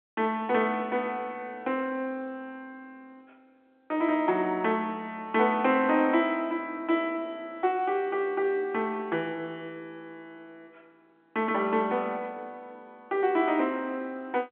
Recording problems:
phone line; 280 Hz to 3.4 kHz, G.711

